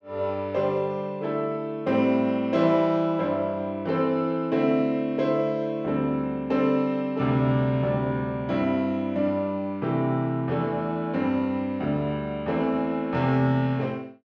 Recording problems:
none

